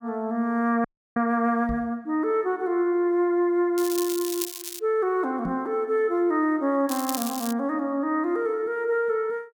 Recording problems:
audio freezing; at 1 s
knock on the microphone; at 1.5 s and at 5.5 s; peak -4 dB vs average level
crackle; from 4 to 5 s and at 7 s; loose cable, SNR 8 dB

